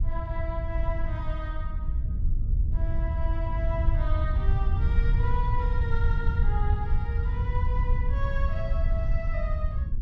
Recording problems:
low-frequency rumble; below 76 Hz, SNR -9 dB

